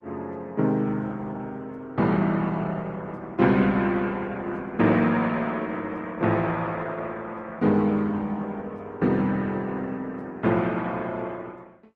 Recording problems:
lossy codec; Opus, then Opus, log-spectral distance 2 dB

